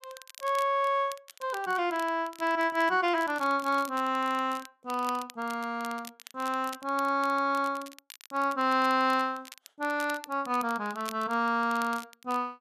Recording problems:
crackle; vinyl, SNR 19 dB

